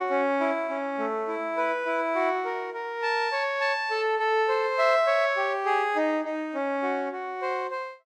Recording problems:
none

